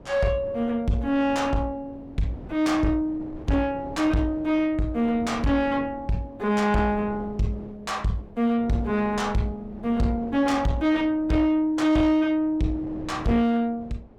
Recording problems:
distortion; soft clipping, signal-to-distortion ratio 10 dB
wind on the microphone; below 450 Hz, SNR 17 dB

